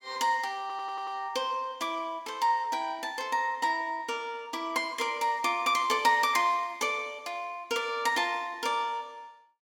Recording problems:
stutter; at 0.5 s

